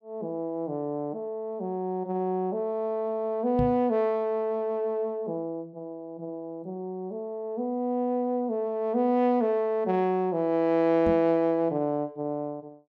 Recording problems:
microphone bump; at 3.5 s and at 11 s; peak +1 dB vs average level

